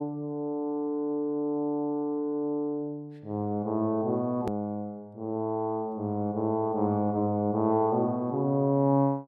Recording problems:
hard cut with a click; at 4.5 s

